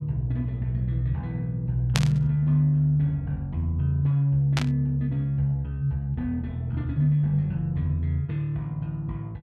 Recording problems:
burst of static; at 2 s and at 4.5 s; peak +4 dB vs average level

